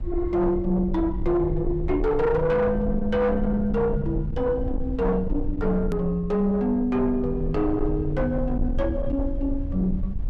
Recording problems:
distorted audio; soft clipping, signal-to-distortion ratio 10 dB
low-frequency rumble; below 80 Hz, SNR 7 dB
hard cut with a click; at 6 s

